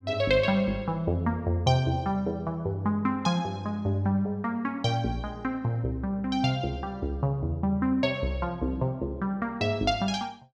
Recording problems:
none

